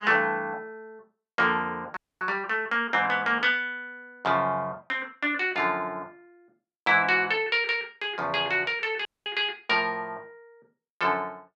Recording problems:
dropout; at 2 s and at 9 s

